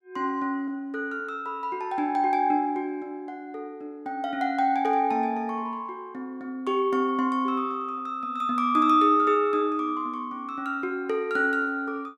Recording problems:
none

